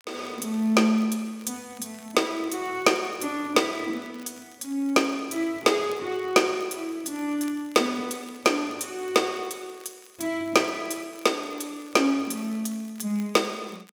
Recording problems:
crackling; vinyl, SNR 27 dB

